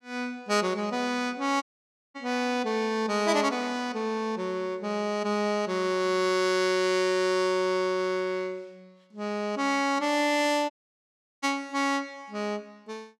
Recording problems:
dropout; at 1.5 s for 0.5 s and at 11 s for 0.5 s

